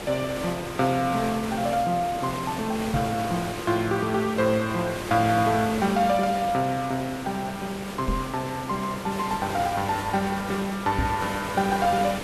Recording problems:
background hiss; slope -5 dB per octave, SNR 9 dB
knock on the microphone; at 3 s, at 8 s and at 11 s; peak +3 dB vs average level

